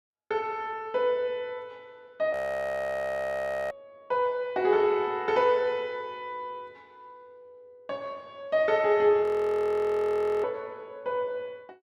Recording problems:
audio freezing; at 2.5 s for 1.5 s and at 9 s for 1 s

